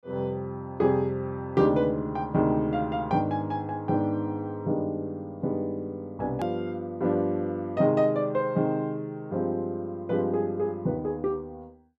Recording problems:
hard cut with a click; at 6.5 s

